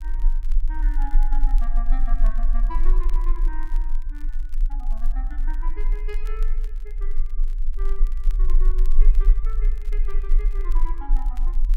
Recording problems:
rumble; below 32 Hz, strongest tone 22 Hz, SNR -16 dB
crackle; vinyl, SNR 15 dB

